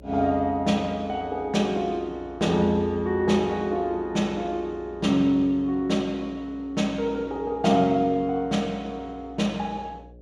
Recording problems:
mains hum; 60 Hz, harmonics up to 600 Hz, SNR 23 dB

